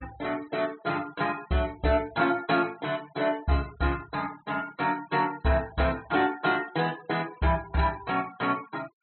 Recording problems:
treble cut off; nothing above 4.3 kHz
noise reduction artefacts; signal-to-artefact ratio 21 dB

